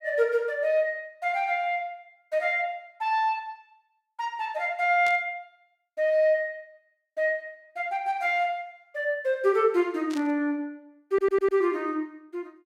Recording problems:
static burst; at 5 s and at 10 s; peak -9 dB vs average level
stutter; at 11 s

